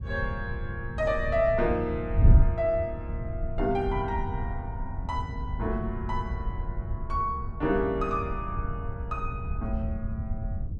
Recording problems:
wind noise; below 100 Hz, SNR 1 dB

